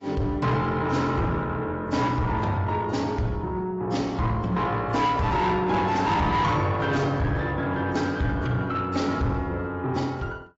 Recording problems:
lossy compression; AAC, log-spectral distance 2 dB, nothing above 7.6 kHz
distorted audio; soft clipping, signal-to-distortion ratio 10 dB

